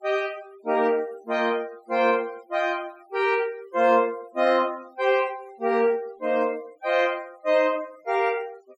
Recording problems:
denoising artefacts; signal-to-artefact ratio 25 dB

